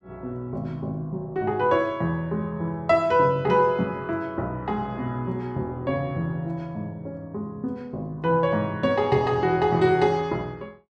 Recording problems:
none

